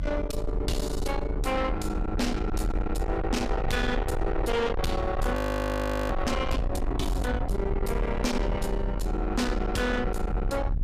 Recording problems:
distortion; soft clipping, signal-to-distortion ratio 7 dB
low-frequency rumble; below 180 Hz, SNR 3 dB
audio freezing; at 5.5 s for 1 s

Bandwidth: 15 kHz